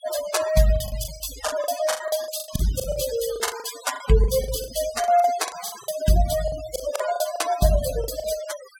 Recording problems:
noise reduction artefacts; signal-to-artefact ratio 11 dB
packet loss; 16% of the sound replaced, filled with the last packet

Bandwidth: 18 kHz